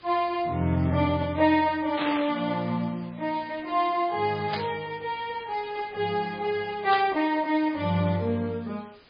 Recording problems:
lossy compression; MP3, log-spectral distance 8 dB, nothing above 5 kHz
hiss; SNR 24 dB
static burst; at 2 s, at 4.5 s and at 7 s; peak -1 dB vs average level

